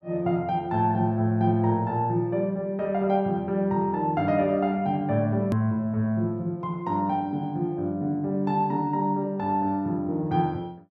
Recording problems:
edit click; at 5.5 s

